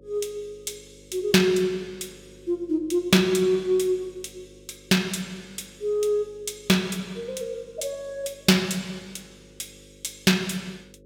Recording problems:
electrical hum; 50 Hz, harmonics up to 550 Hz, SNR 26 dB

